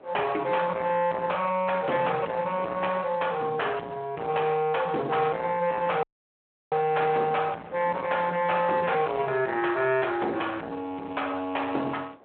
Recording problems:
telephone audio; 240 Hz to 3.3 kHz, Speex
distorted audio; soft clipping, signal-to-distortion ratio 12 dB
wind on the microphone; below 920 Hz, SNR 21 dB
audio cutting out; at 6 s for 0.5 s

